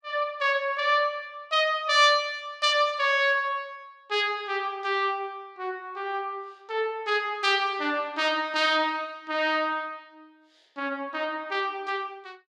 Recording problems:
none

